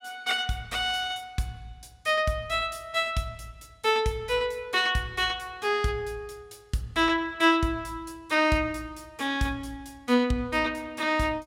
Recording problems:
none

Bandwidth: 16.5 kHz